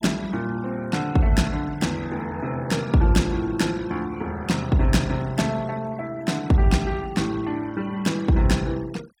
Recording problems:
denoising artefacts; signal-to-artefact ratio 22 dB

